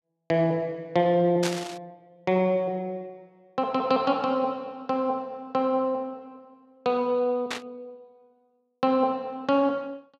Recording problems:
burst of static; at 1.5 s and at 7.5 s; peak +1 dB vs average level

